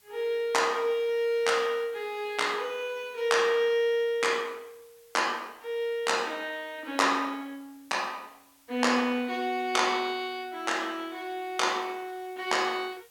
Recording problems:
hiss; slope +1 dB per octave, SNR 30 dB

